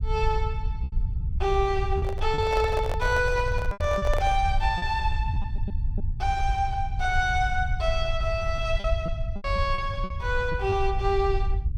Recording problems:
rumble; below 78 Hz, SNR 3 dB
lost packets; 6% of the sound replaced, filled with repeated pitch periods
handling noise; from 2 to 4.5 s; peak -1 dB vs average level

